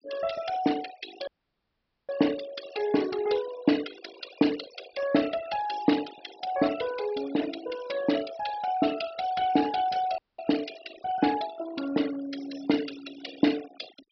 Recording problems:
low-pass filter; nothing above 5.5 kHz
noise reduction artefacts; signal-to-artefact ratio 13 dB
audio cutting out; at 1.5 s for 1 s and at 10 s

